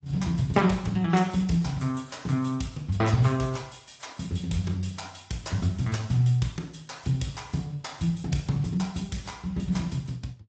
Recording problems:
lossy codec; Speex, then AAC, log-spectral distance 5 dB, nothing above 8 kHz

